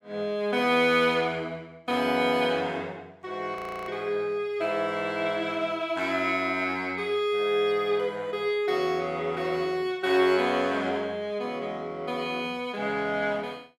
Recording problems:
frozen audio; at 3.5 s

